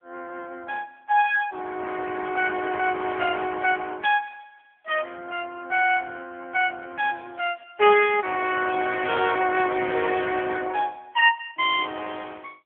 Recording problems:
telephone audio; 280 Hz to 3.3 kHz, AMR-NB

